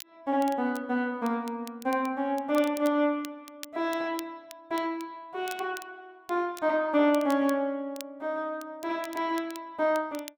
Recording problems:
crackle; vinyl, SNR 19 dB

